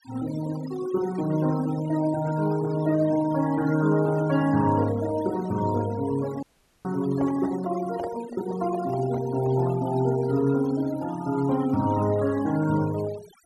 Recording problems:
denoising artefacts; signal-to-artefact ratio 16 dB
dropout; at 6.5 s
microphone handling noise; from 7 to 10 s; peak -6 dB vs average level

